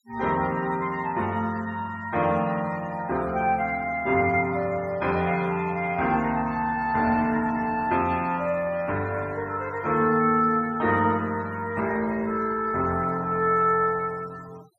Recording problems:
noise reduction artefacts; signal-to-artefact ratio 21 dB

